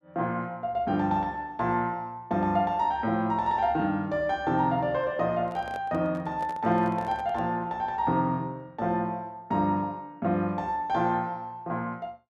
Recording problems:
handling noise; from 5.5 to 7.5 s; peak -10 dB vs average level

